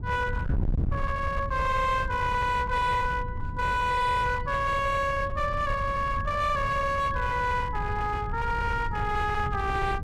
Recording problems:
distorted audio; hard clipping, signal-to-distortion ratio 11 dB
wind noise; below 120 Hz, SNR 7 dB

